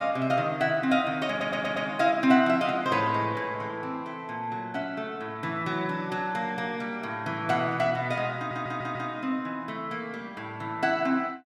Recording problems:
audio stuttering; at 1.5 s and at 8.5 s

